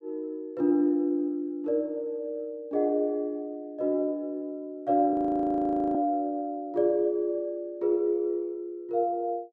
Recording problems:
frozen audio; at 5 s for 1 s

